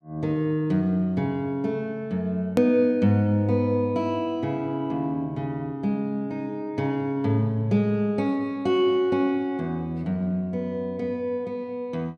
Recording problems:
edit click; at 2.5 s

